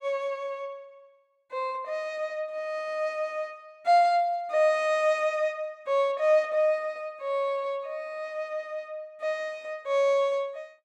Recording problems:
none

